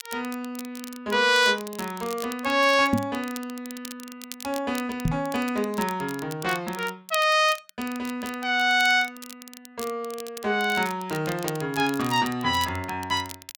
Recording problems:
crackling; vinyl, SNR 16 dB
knock on the microphone; at 3 s and at 5 s; peak +5 dB vs average level

